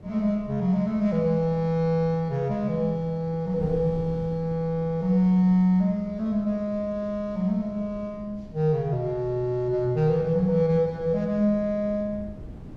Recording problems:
wind on the microphone; below 240 Hz, SNR 19 dB

